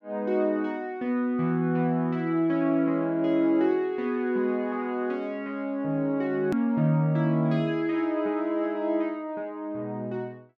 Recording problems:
hard cut with a click; at 6.5 s

